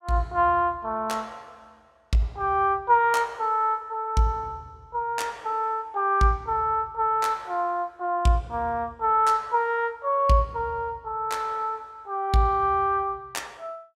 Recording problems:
none

